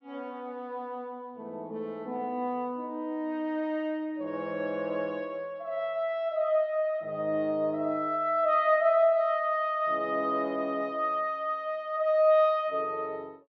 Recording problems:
none

